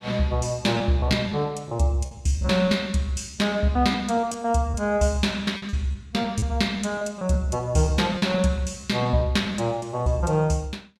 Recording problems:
packet loss; 10% of the sound replaced, filled with repeated pitch periods

